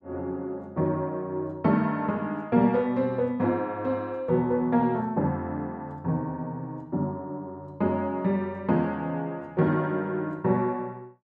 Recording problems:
none

